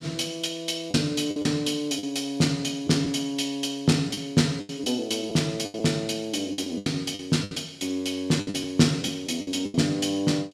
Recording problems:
lost packets; 9% of the sound replaced, filled with the last packet

